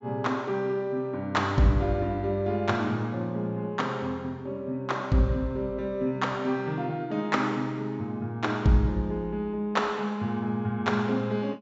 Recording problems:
treble cut off; nothing above 8 kHz

